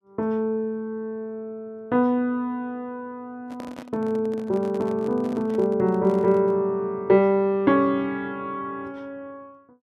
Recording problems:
handling noise; from 3.5 to 6.5 s; peak -10 dB vs average level

